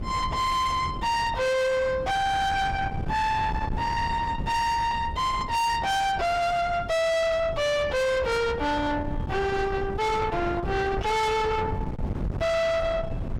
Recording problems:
distortion; soft clipping, signal-to-distortion ratio 7 dB
wind on the microphone; below 470 Hz, SNR 8 dB

